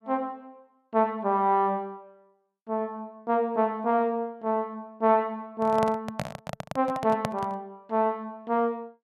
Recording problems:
handling noise; from 5.5 to 7.5 s; peak +2 dB vs average level

